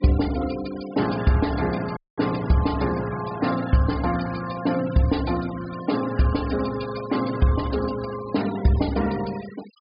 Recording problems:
low-pass filter; nothing above 5 kHz
denoising artefacts; signal-to-artefact ratio 16 dB
dropout; at 2 s

